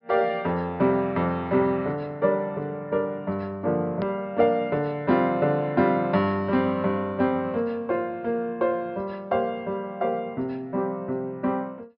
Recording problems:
treble missing; nothing above 5.5 kHz
edit click; at 4 s

